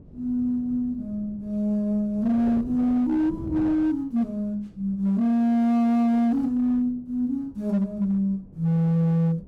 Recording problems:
distorted audio; hard clipping, signal-to-distortion ratio 11 dB
wind noise; below 260 Hz, SNR 19 dB

